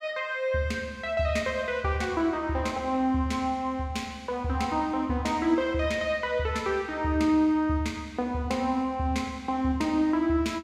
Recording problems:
none

